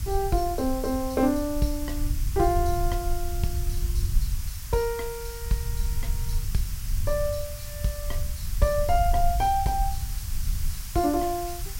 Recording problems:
background hiss; SNR 11 dB
rumble; below 70 Hz, SNR 4 dB

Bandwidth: 16 kHz